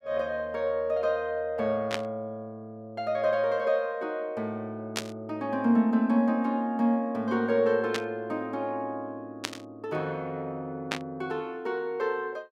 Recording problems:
burst of static; 5 times, first at 2 s; peak +3 dB vs average level

